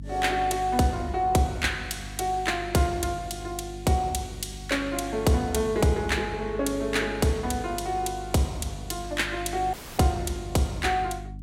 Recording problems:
hum; 50 Hz, harmonics up to 300 Hz, SNR 13 dB
audio cutting out; at 9.5 s

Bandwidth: 16 kHz